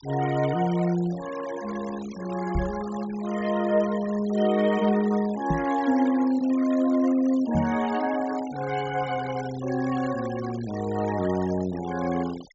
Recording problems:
low-pass filter; nothing above 8 kHz
noise reduction artefacts; signal-to-artefact ratio 16 dB
microphone thump; at 2.5 s, at 5.5 s and at 7.5 s; peak +3 dB vs average level

